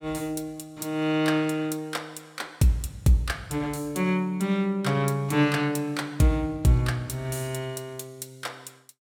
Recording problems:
none

